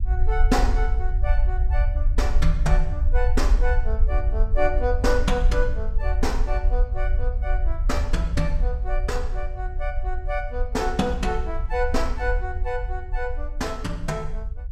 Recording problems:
low-frequency rumble; below 54 Hz, SNR -2 dB

